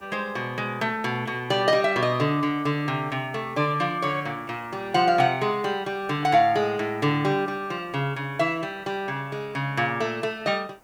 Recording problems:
hiss; SNR 29 dB

